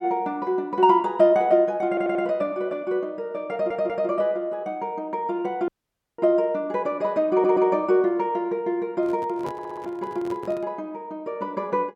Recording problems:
stutter; 4 times, first at 2 s
audio cutting out; at 5.5 s for 0.5 s
microphone handling noise; from 9 to 11 s; peak -9 dB vs average level

